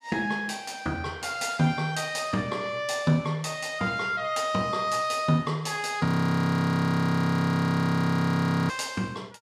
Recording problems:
frozen audio; at 6 s for 2.5 s

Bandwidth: 14.5 kHz